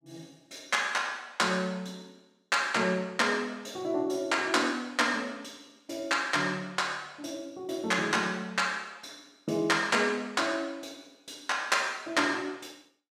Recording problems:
none

